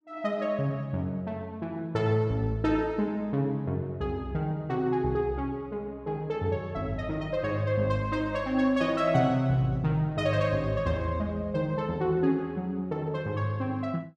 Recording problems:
none

